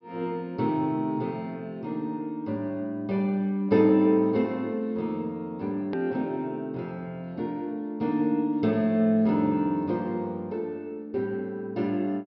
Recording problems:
treble missing; nothing above 5.5 kHz
hard cut with a click; at 6 s

